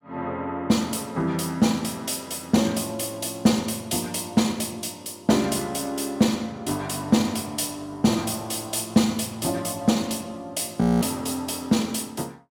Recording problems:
audio freezing; at 11 s

